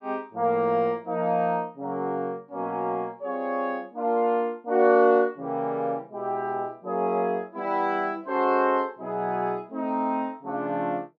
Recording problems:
none

